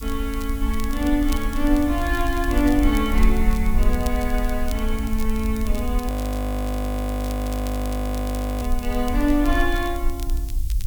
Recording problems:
hiss; slope +9 dB per octave, SNR 17 dB
rumble; below 52 Hz, SNR 2 dB
crackling; vinyl, SNR 17 dB
frozen audio; at 6 s for 2.5 s

